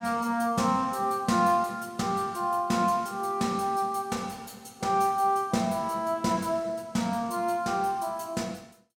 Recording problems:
none

